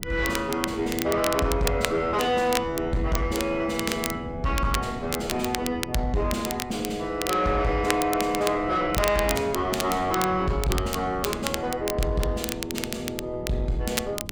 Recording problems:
distortion; soft clipping, signal-to-distortion ratio 10 dB
wind on the microphone; below 240 Hz, SNR 14 dB
crackling; vinyl, SNR 7 dB

